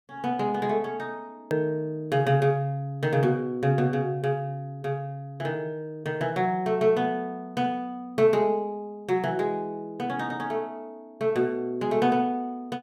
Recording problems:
hard cut with a click; at 1.5 s

